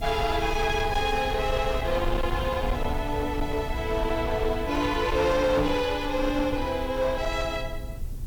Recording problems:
distorted audio; hard clipping, uneven, signal-to-distortion ratio 10 dB
background hiss; SNR 25 dB
low-frequency rumble; below 90 Hz, SNR 8 dB
knock on the microphone; at 5.5 s; peak +3 dB vs average level

